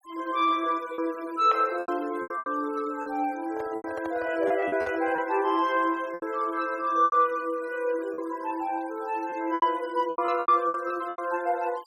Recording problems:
denoising artefacts; signal-to-artefact ratio 23 dB
packet loss; 10% of the sound replaced, filled with repeated pitch periods
handling noise; from 3.5 to 5.5 s; peak -6 dB vs average level

